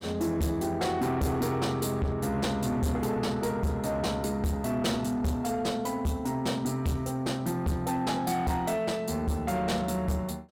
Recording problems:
distorted audio; soft clipping, signal-to-distortion ratio 7 dB

